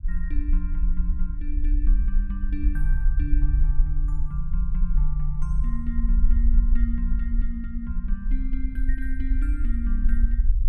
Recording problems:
rumble; below 46 Hz, SNR -10 dB

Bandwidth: 14.5 kHz